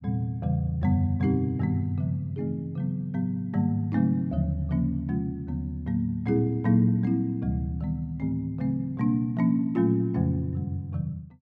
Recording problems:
none

